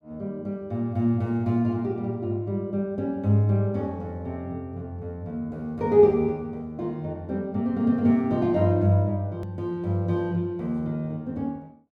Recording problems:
edit click; at 9.5 s

